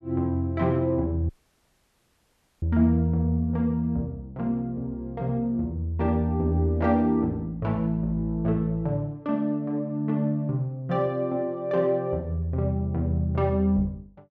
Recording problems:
audio cutting out; at 1.5 s for 1.5 s

